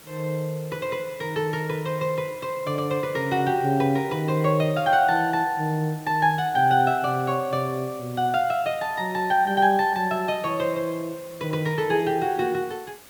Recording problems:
hiss; slope -2 dB per octave, SNR 21 dB

